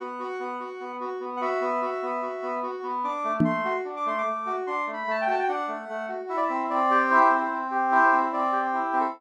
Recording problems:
knock on the microphone; at 3.5 s; peak +7 dB vs average level

